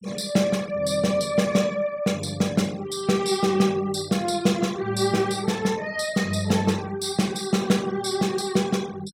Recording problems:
noise reduction artefacts; signal-to-artefact ratio 20 dB

